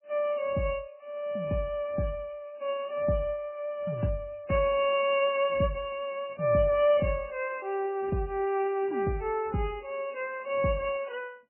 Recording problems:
lossy compression; MP3, log-spectral distance 4 dB, nothing above 2.8 kHz

